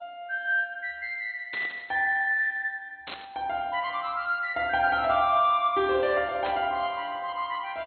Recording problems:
lossy codec; MP2, log-spectral distance 3 dB, nothing above 3.6 kHz
burst of static; at 1.5 s, at 3 s and at 6.5 s; peak -6 dB vs average level

